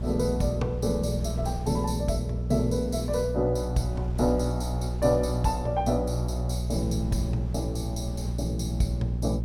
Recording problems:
hum; 60 Hz, harmonics up to 420 Hz, SNR 2 dB
wind noise; below 200 Hz, SNR 17 dB

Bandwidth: 16 kHz